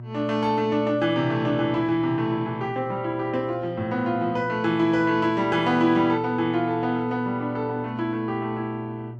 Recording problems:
hum; 60 Hz, harmonics up to 720 Hz, SNR 14 dB

